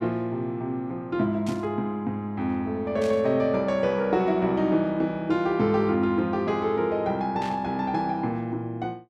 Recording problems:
burst of static; at 1.5 s, at 3 s and at 7.5 s; peak -10 dB vs average level

